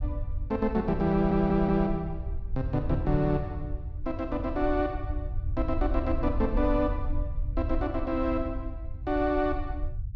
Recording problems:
rumble; below 74 Hz, SNR 6 dB
stutter; at 1 s

